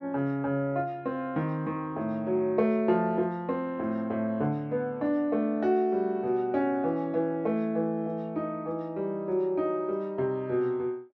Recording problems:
none

